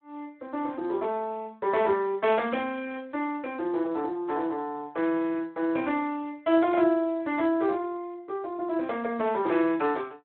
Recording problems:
phone line; 260 Hz to 3.6 kHz, Speex

